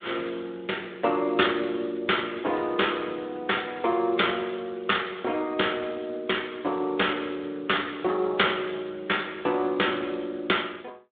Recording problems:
phone line; 260 Hz to 3.6 kHz, Speex

